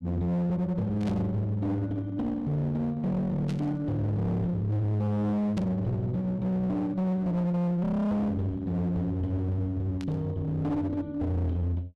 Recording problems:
distortion; hard clipping, uneven, signal-to-distortion ratio 6 dB
burst of static; 4 times, first at 1 s; peak -11 dB vs average level

